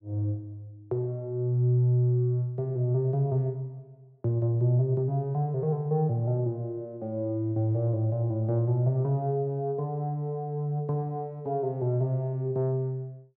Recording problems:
none

